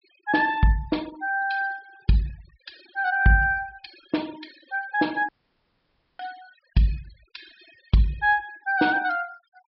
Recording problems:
treble missing; nothing above 5.3 kHz
denoising artefacts; signal-to-artefact ratio 23 dB
audio cutting out; at 5.5 s for 1 s

